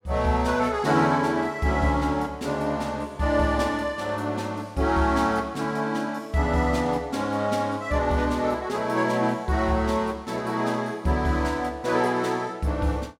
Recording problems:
none

